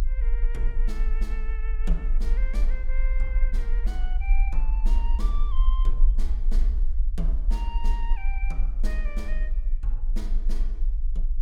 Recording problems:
rumble; below 42 Hz, strongest tone 24 Hz, SNR -13 dB

